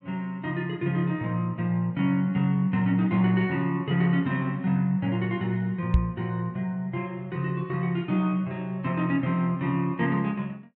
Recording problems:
microphone bump; at 6 s; peak +8 dB vs average level

